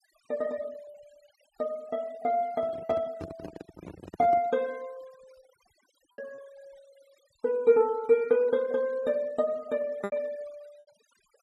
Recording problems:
noise reduction artefacts; signal-to-artefact ratio 26 dB
packet loss; 3% of the sound replaced, filled with repeated pitch periods
handling noise; from 2.5 to 4.5 s; peak -8 dB vs average level

